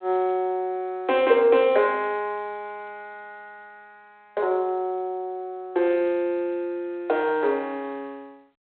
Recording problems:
telephone audio; 370 Hz to 3.5 kHz, G.726

